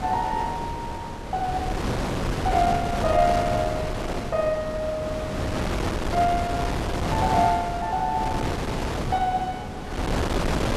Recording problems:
wind noise; below 830 Hz, SNR 2 dB

